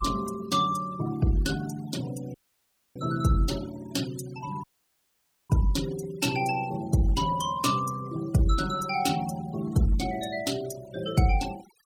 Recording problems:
denoising artefacts; signal-to-artefact ratio 16 dB
dropout; at 2.5 s for 0.5 s and at 4.5 s for 1 s

